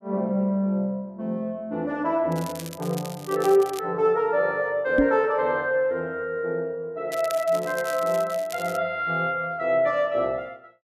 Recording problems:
crackle; from 2.5 to 4 s and from 7 to 9 s; loose cable, SNR 16 dB
microphone thump; at 5 s; peak +7 dB vs average level

